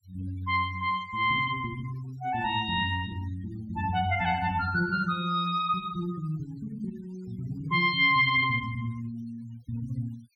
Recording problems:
noise reduction artefacts; signal-to-artefact ratio 24 dB

